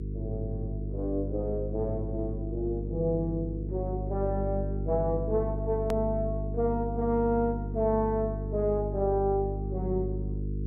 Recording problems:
electrical hum; 50 Hz, harmonics up to 450 Hz, SNR 4 dB
edit click; at 6 s

